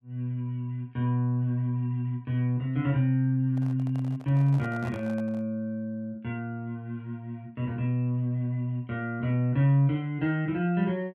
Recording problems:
handling noise; from 3.5 to 5.5 s; peak -11 dB vs average level

